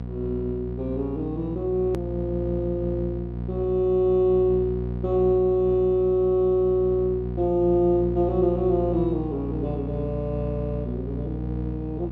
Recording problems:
hum; 60 Hz, harmonics up to 720 Hz, SNR 7 dB
click at an edit; at 2 s

